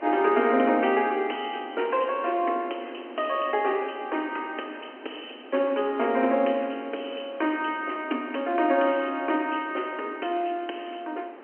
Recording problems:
phone line; 240 Hz to 3.2 kHz, G.711
wind noise; below 950 Hz, SNR 19 dB

